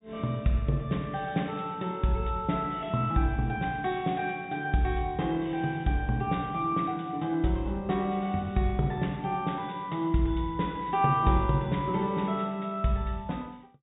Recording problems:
treble missing; nothing above 4 kHz

